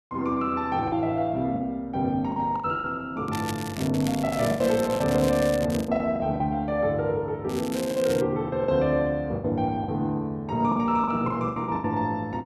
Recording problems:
lost packets; 10% of the sound replaced, filled with the last packet
crackling; from 3.5 to 6 s and at 7.5 s; loose cable, SNR 13 dB

